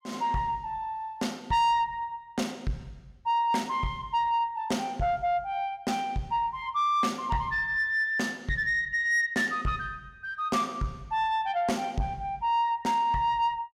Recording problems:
distorted audio; soft clipping, signal-to-distortion ratio 12 dB

